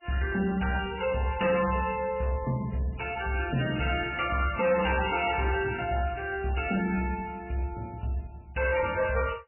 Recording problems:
codec artefacts; MP3, log-spectral distance 6 dB, nothing above 2.4 kHz
distortion; hard clipping, uneven, signal-to-distortion ratio 10 dB

